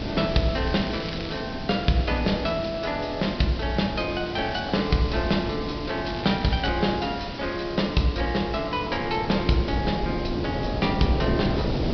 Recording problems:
low-pass filter; nothing above 5.5 kHz
hiss; SNR 13 dB
wind on the microphone; below 430 Hz, SNR 7 dB
crackle; at 0.5 s and at 6 s; loose cable, SNR 15 dB

